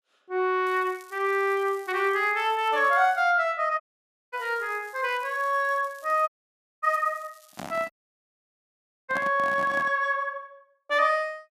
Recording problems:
crackle; from 0.5 to 3 s and from 4.5 to 8 s; loose cable, SNR 27 dB
dropout; at 4 s for 0.5 s, at 6.5 s for 0.5 s and at 8 s for 1 s
handling noise; from 7.5 to 10 s; peak -6 dB vs average level

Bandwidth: 14.5 kHz